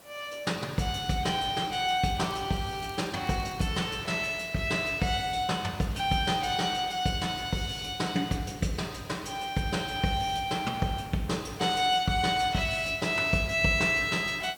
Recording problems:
hiss; SNR 23 dB
crackle; from 2 to 3.5 s; loose cable, SNR 27 dB

